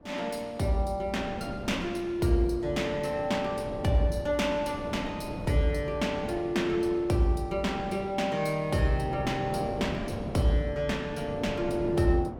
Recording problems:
wind noise; below 470 Hz, SNR 11 dB

